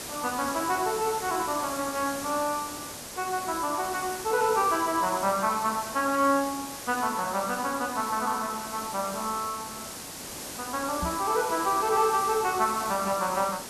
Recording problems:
hiss; SNR 9 dB
microphone bump; at 11 s; peak -2 dB vs average level

